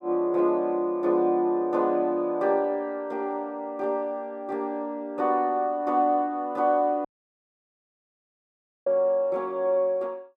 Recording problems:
dropout; at 7 s for 2 s

